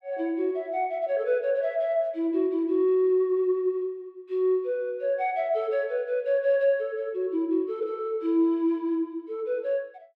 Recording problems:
none

